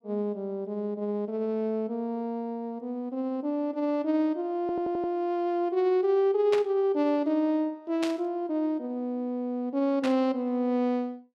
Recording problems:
stutter; at 4.5 s
burst of static; at 6.5 s, at 8 s and at 10 s; peak -2 dB vs average level

